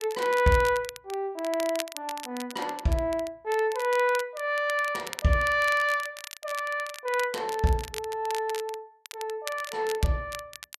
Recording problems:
crackle; vinyl, SNR 13 dB

